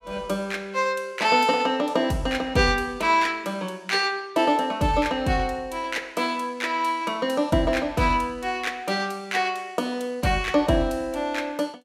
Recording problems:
none

